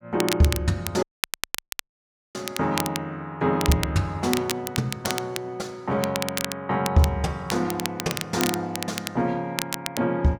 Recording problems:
crackle; vinyl, SNR 6 dB
audio cutting out; at 1 s for 1.5 s

